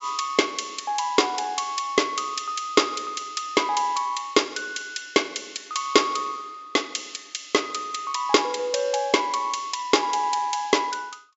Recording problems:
treble missing; nothing above 8 kHz

